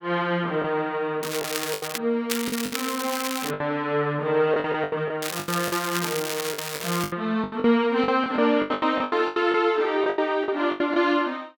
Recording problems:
lost packets; 13% of the sound replaced, filled with the last packet
crackle; at 1 s, from 2.5 to 3.5 s and from 5 to 7 s; loose cable, SNR 6 dB

